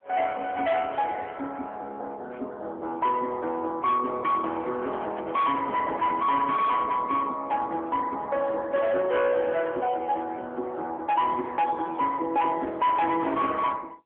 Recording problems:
telephone audio; 260 Hz to 3.4 kHz, AMR-NB
distorted audio; hard clipping, signal-to-distortion ratio 12 dB
handling noise; from 4.5 to 6.5 s; peak -9 dB vs average level

